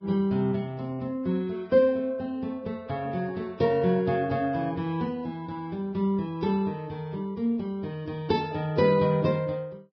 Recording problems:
codec artefacts; Vorbis, log-spectral distance 2 dB

